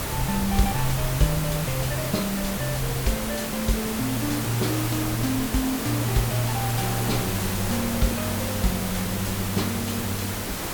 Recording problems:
background hiss; slope -3 dB per octave, SNR 2 dB
rumble; below 90 Hz, SNR 13 dB

